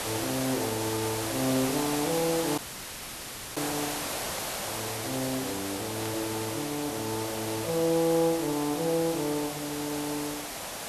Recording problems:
hiss; SNR 2 dB
audio cutting out; at 2.5 s for 1 s
burst of static; at 6 s; peak -8 dB vs average level

